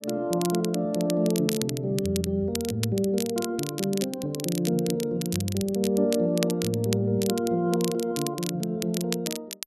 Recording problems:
crackle; vinyl, SNR 9 dB

